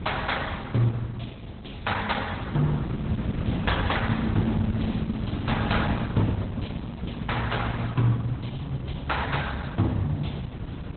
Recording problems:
lossy codec; Opus, log-spectral distance 5 dB, nothing above 4 kHz
wind noise; below 250 Hz, SNR 4 dB

